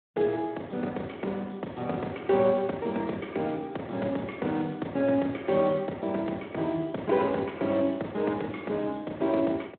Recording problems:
telephone audio; 190 Hz to 3.4 kHz, Speex

